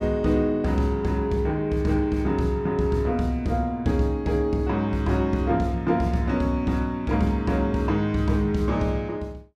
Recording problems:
none

